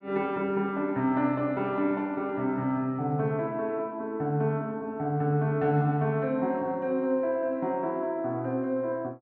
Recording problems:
none

